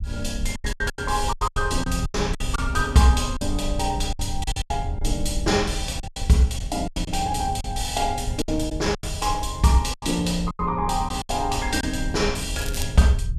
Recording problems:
rumble; below 82 Hz, SNR 7 dB
lost packets; 11% of the sound replaced, filled with silence
crackle; at 13 s; loose cable, SNR 12 dB

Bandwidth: 14 kHz